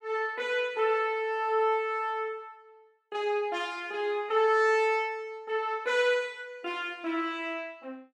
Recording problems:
none

